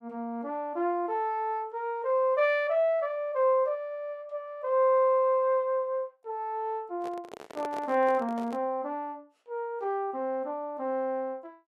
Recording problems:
microphone handling noise; from 7 to 8.5 s; peak -6 dB vs average level

